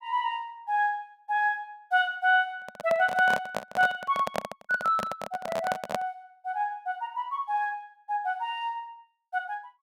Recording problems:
microphone handling noise; from 2.5 to 6 s; peak +2 dB vs average level

